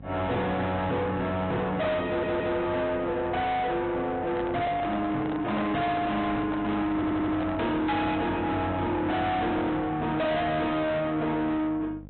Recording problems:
low-pass filter; nothing above 3.9 kHz
lossy codec; MP3, log-spectral distance 2 dB
distortion; soft clipping, signal-to-distortion ratio 7 dB
hum; 50 Hz, harmonics up to 800 Hz, SNR 19 dB
stutter; at 2 s and at 7 s
microphone handling noise; from 4.5 to 7.5 s; peak -1 dB vs average level

